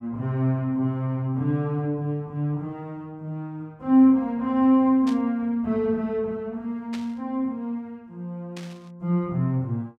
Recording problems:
static burst; at 5 s, at 7 s and at 8.5 s; peak -10 dB vs average level

